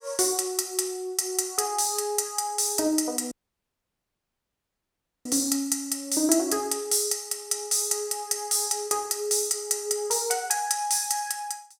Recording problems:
audio cutting out; at 3.5 s for 2 s

